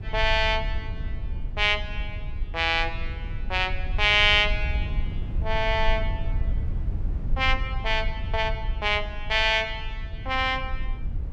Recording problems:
rumble; below 66 Hz, SNR 8 dB

